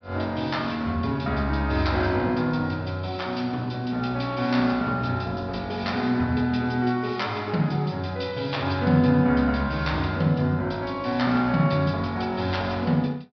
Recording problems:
low-pass filter; nothing above 5.5 kHz

